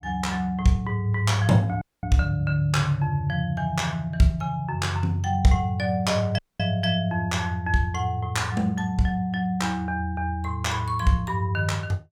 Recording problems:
dropout; at 2 s and at 6.5 s

